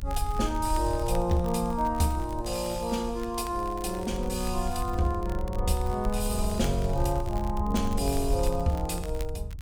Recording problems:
low-frequency rumble; below 70 Hz, SNR 5 dB
crackle; vinyl, SNR 20 dB

